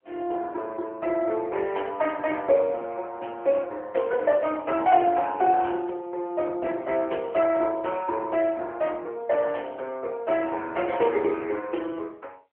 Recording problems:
phone line; 320 Hz to 3.3 kHz, AMR-NB

